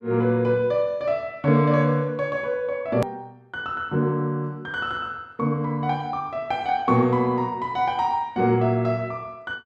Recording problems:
click at an edit; at 3 s

